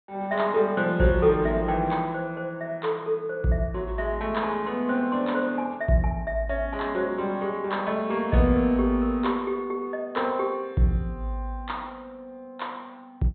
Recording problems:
low-pass filter; nothing above 4.1 kHz

